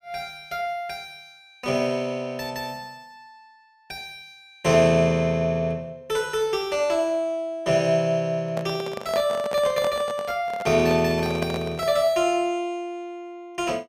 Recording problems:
handling noise; from 8.5 to 12 s; peak -2 dB vs average level

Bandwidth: 15 kHz